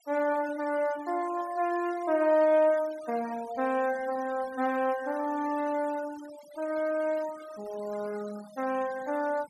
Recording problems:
denoising artefacts; signal-to-artefact ratio 19 dB

